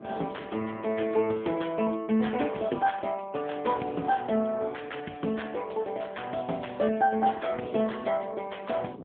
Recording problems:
telephone audio; 170 Hz to 3.5 kHz, AMR-NB
wind on the microphone; below 450 Hz, SNR 21 dB

